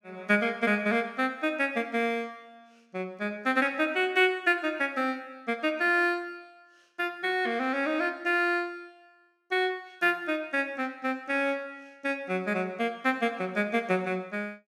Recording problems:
none

